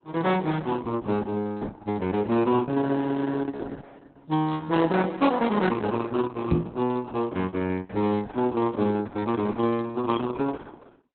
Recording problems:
codec artefacts; Opus, log-spectral distance 4 dB, nothing above 3.9 kHz
knock on the microphone; at 6.5 s; peak +6 dB vs average level

